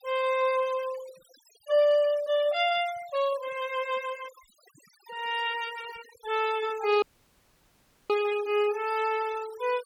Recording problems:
noise reduction artefacts; signal-to-artefact ratio 17 dB
audio cutting out; at 7 s for 1 s

